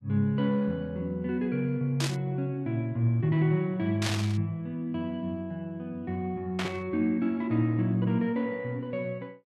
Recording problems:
static burst; at 2 s, at 4 s and at 6.5 s; peak +2 dB vs average level

